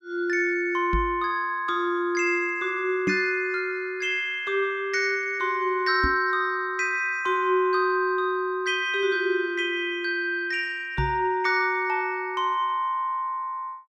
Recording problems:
microphone bump; 4 times, first at 1 s; peak +2 dB vs average level

